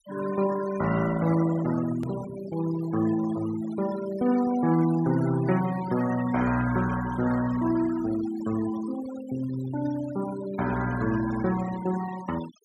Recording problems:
noise reduction artefacts; signal-to-artefact ratio 14 dB
click at an edit; at 2 s

